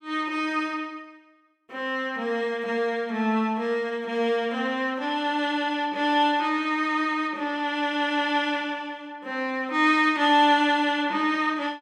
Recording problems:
none

